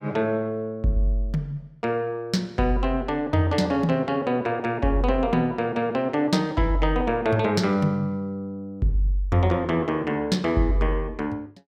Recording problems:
none

